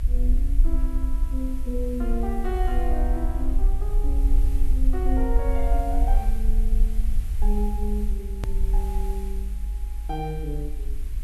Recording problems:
electrical hum; 50 Hz, harmonics up to 800 Hz, SNR 22 dB
background hiss; SNR 17 dB
low-frequency rumble; below 50 Hz, SNR -6 dB
click at an edit; at 8.5 s

